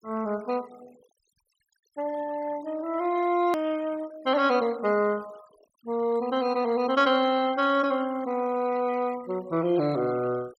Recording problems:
noise reduction artefacts; signal-to-artefact ratio 22 dB
click at an edit; at 3.5 s

